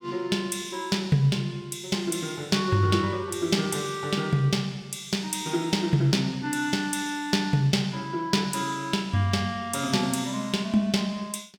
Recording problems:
none

